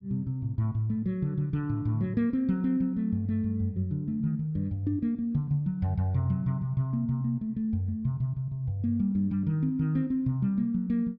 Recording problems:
none

